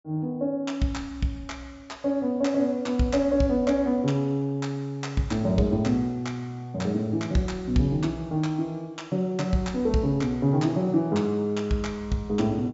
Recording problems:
low-pass filter; nothing above 8 kHz

